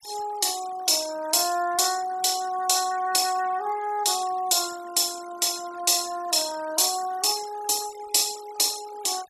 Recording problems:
denoising artefacts; signal-to-artefact ratio 18 dB

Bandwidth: 14 kHz